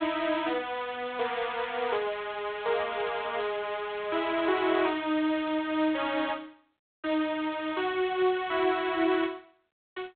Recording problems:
telephone audio; 260 Hz to 3.6 kHz, G.726

